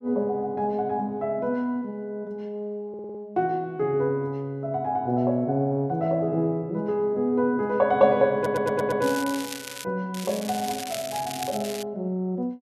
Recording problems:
stutter; at 3 s and at 8.5 s
crackling; from 8.5 to 10 s and from 10 to 12 s; loose cable, SNR 11 dB

